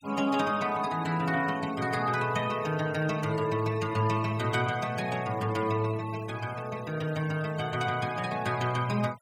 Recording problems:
noise reduction artefacts; signal-to-artefact ratio 18 dB

